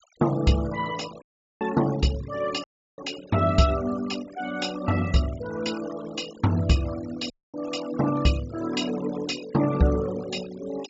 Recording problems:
low-pass filter; nothing above 8 kHz
denoising artefacts; signal-to-artefact ratio 16 dB
audio cutting out; at 1 s, at 2.5 s and at 7.5 s

